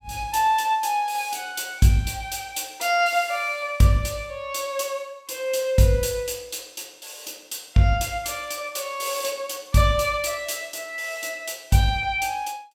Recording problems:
none

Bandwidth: 16.5 kHz